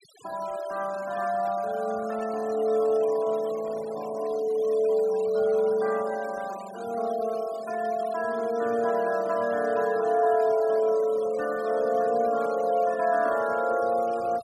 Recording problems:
denoising artefacts; signal-to-artefact ratio 21 dB

